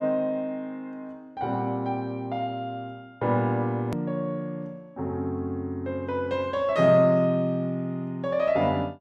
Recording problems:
hard cut with a click; at 4 s

